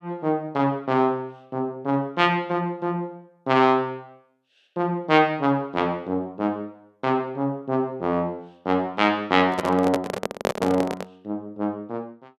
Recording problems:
microphone handling noise; from 9.5 to 11 s; peak +3 dB vs average level

